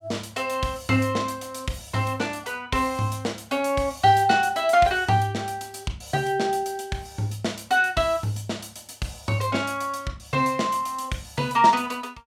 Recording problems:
none

